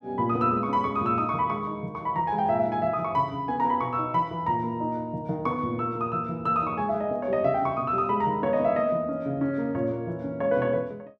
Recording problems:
none

